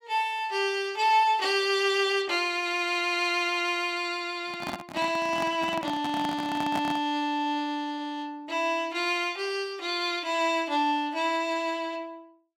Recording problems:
microphone handling noise; from 4.5 to 7 s; peak -2 dB vs average level

